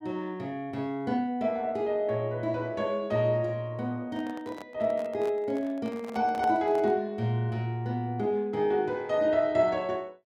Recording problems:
handling noise; from 4 to 7 s; peak -6 dB vs average level

